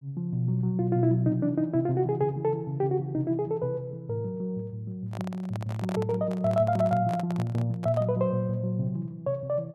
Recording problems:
handling noise; from 5 to 8 s; peak -3 dB vs average level

